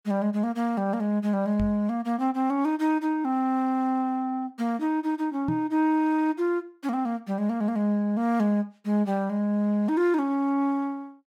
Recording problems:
knock on the microphone; at 1.5 s and at 5.5 s; peak -2 dB vs average level

